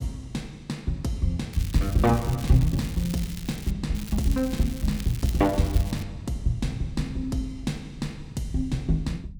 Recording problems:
low-frequency rumble; below 150 Hz, SNR 17 dB
crackle; from 1.5 to 3.5 s and from 4 to 6 s; loose cable, SNR 15 dB

